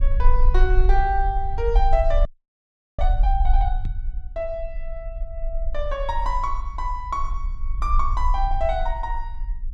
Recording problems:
low-frequency rumble; below 44 Hz, strongest tone 20 Hz, SNR -1 dB
audio freezing; at 2.5 s for 0.5 s
microphone bump; at 4 s; peak -1 dB vs average level

